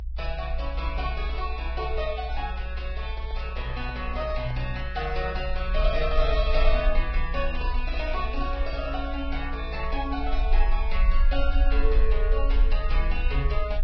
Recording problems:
lossy codec; Vorbis, log-spectral distance 2 dB, nothing above 5.3 kHz
rumble; below 56 Hz, SNR -2 dB
microphone handling noise; from 3 to 4.5 s; peak -7 dB vs average level

